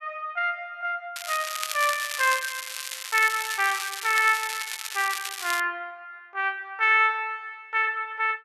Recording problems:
crackling; from 1 to 5.5 s; loose cable, SNR 7 dB

